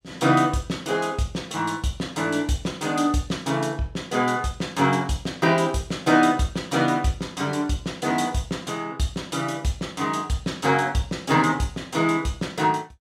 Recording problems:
none

